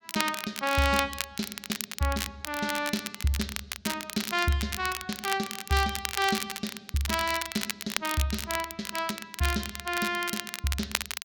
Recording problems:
crackle; vinyl, SNR 5 dB

